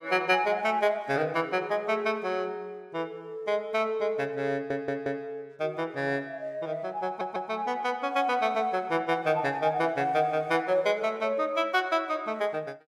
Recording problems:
audio stuttering; at 4.5 s and at 7 s

